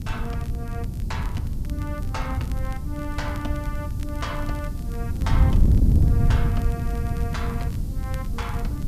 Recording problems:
hiss; slope +4 dB per octave, SNR 16 dB
wind on the microphone; below 120 Hz, SNR -9 dB
crackling; vinyl, SNR 17 dB

